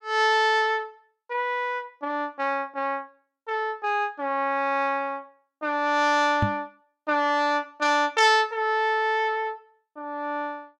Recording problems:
knock on the microphone; at 6.5 s; peak +3 dB vs average level

